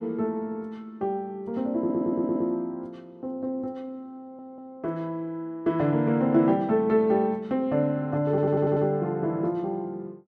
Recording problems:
stutter; at 2 s, at 4 s and at 8.5 s

